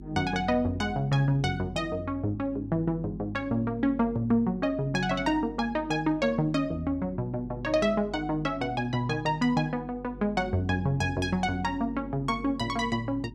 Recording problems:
hum; 50 Hz, harmonics up to 400 Hz, SNR 15 dB

